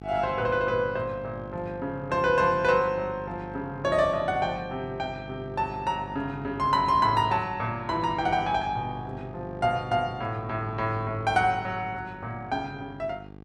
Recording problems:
hum; 50 Hz, harmonics up to 1.6 kHz, SNR 15 dB

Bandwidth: 13 kHz